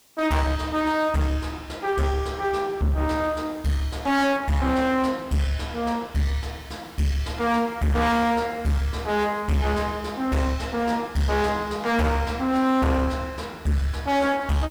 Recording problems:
distorted audio; hard clipping, uneven, signal-to-distortion ratio 6 dB
background hiss; SNR 28 dB

